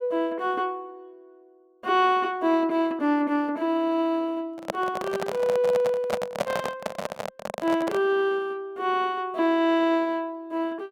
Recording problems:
microphone handling noise; from 4.5 to 8 s; peak +4 dB vs average level

